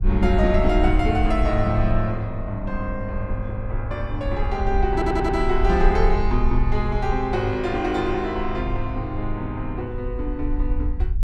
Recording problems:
low-frequency rumble; below 58 Hz, SNR 3 dB
audio stuttering; at 5 s

